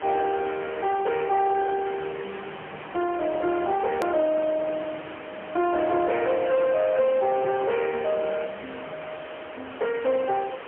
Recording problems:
phone line; 340 Hz to 3.3 kHz, AMR-NB, then MP3
distortion; soft clipping, signal-to-distortion ratio 8 dB
background hiss; SNR 9 dB
hard cut with a click; at 4 s

